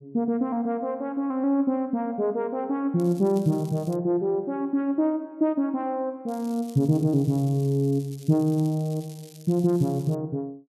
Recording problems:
crackling; at 3 s and from 6.5 to 10 s; loose cable, SNR 24 dB

